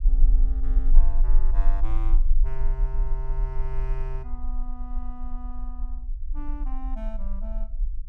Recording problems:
rumble; below 36 Hz, strongest tone 20 Hz, SNR -13 dB

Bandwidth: 15 kHz